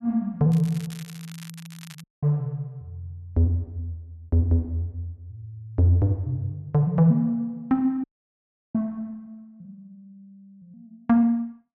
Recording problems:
crackling; from 0.5 to 2 s; loose cable, SNR 21 dB
dropout; at 2 s and at 8 s for 0.5 s

